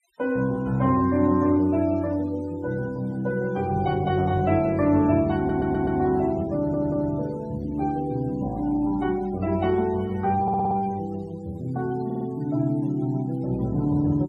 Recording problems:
denoising artefacts; signal-to-artefact ratio 24 dB
stutter; 4 times, first at 5.5 s

